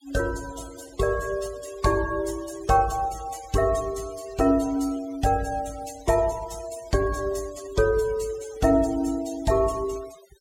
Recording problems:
denoising artefacts; signal-to-artefact ratio 18 dB

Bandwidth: 16.5 kHz